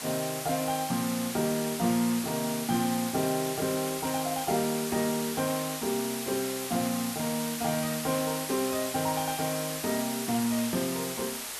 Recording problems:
hiss; slope +1 dB per octave, SNR 4 dB

